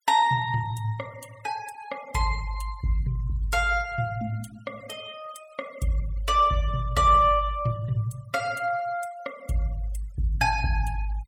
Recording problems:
denoising artefacts; signal-to-artefact ratio 23 dB

